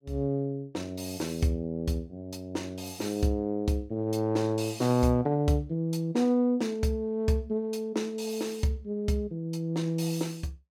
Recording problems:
none

